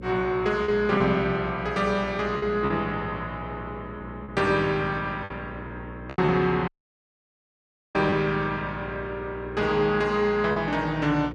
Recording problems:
hum; 60 Hz, harmonics up to 540 Hz, SNR 14 dB
packet loss; 4% of the sound replaced, filled with repeated pitch periods
audio cutting out; at 6.5 s for 1.5 s

